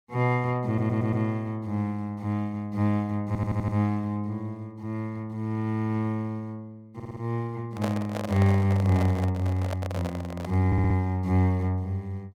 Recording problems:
stutter; 4 times, first at 0.5 s
microphone handling noise; from 7.5 to 11 s; peak -1 dB vs average level

